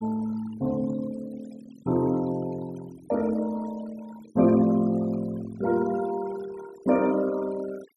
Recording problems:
noise reduction artefacts; signal-to-artefact ratio 19 dB

